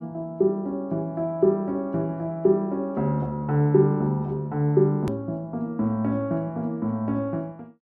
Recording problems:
hard cut with a click; at 5 s

